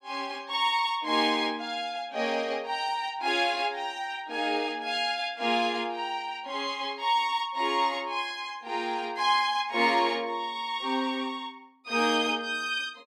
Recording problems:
none

